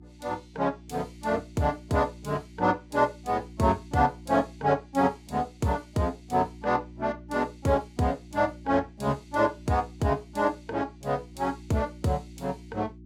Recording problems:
mains hum; 60 Hz, harmonics up to 360 Hz, SNR 20 dB

